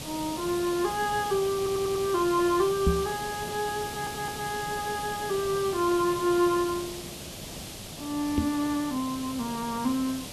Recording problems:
background hiss; SNR 9 dB
stutter; at 1.5 s and at 4 s
microphone thump; at 3 s and at 8.5 s; peak +6 dB vs average level

